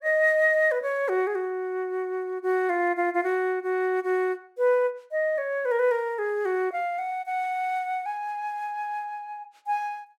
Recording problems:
none

